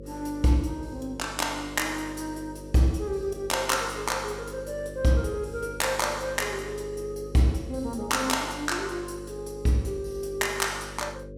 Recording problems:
hum; 50 Hz, harmonics up to 550 Hz, SNR 13 dB

